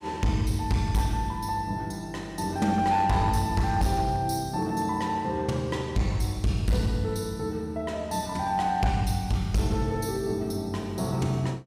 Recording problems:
distorted audio; hard clipping, signal-to-distortion ratio 12 dB

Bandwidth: 15.5 kHz